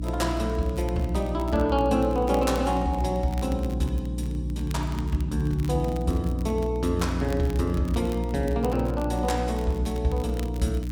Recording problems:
electrical hum; 60 Hz, harmonics up to 300 Hz, SNR 4 dB
crackling; vinyl, SNR 21 dB

